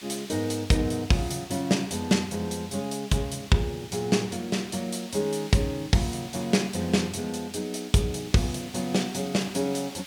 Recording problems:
hiss; SNR 16 dB

